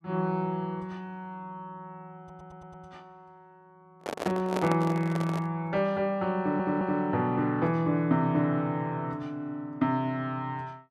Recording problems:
stutter; at 2 s and at 6.5 s
handling noise; from 4 to 5.5 s; peak +1 dB vs average level

